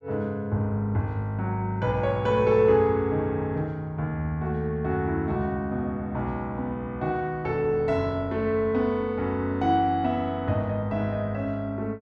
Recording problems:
none

